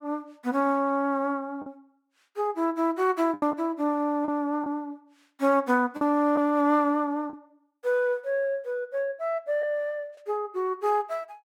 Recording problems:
packet loss; 3% of the sound replaced, filled with the last packet

